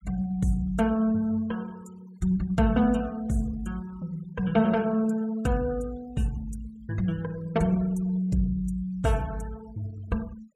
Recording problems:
denoising artefacts; signal-to-artefact ratio 25 dB

